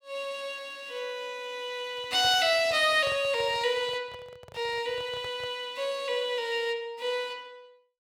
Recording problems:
microphone handling noise; from 2 to 5.5 s; peak -10 dB vs average level

